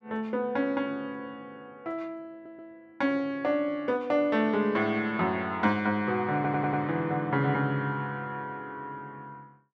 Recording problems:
audio stuttering; at 2.5 s and at 6.5 s

